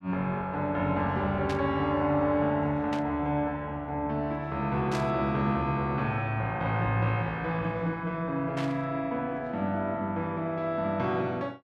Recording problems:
static burst; 4 times, first at 1.5 s; peak -5 dB vs average level

